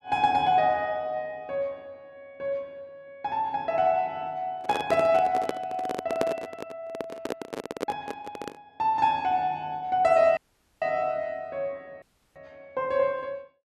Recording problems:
handling noise; from 4.5 to 8.5 s; peak +3 dB vs average level
audio cutting out; at 10 s and at 12 s

